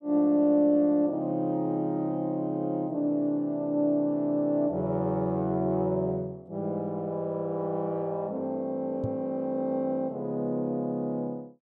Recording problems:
microphone thump; at 9 s; peak -2 dB vs average level

